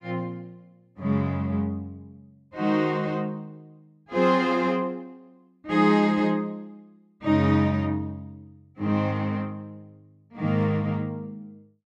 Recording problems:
none

